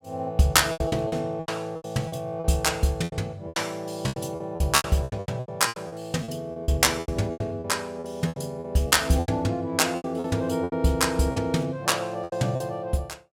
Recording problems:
lost packets; 16% of the sound replaced, filled with repeated pitch periods

